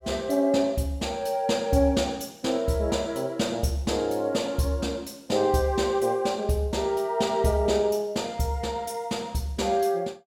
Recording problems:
none

